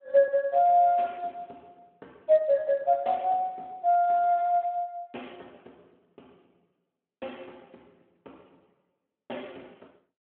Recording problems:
telephone audio; 280 Hz to 3.2 kHz, Speex

